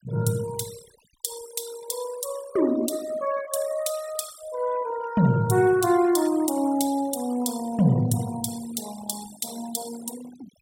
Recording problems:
denoising artefacts; signal-to-artefact ratio 15 dB

